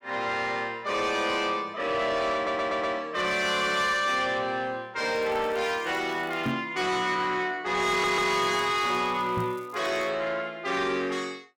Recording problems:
distorted audio; soft clipping, signal-to-distortion ratio 12 dB
audio stuttering; at 2.5 s and at 8 s
crackling; from 5 to 6.5 s and from 8 to 10 s; loose cable, SNR 29 dB
knock on the microphone; at 6.5 s and at 9.5 s; peak +1 dB vs average level

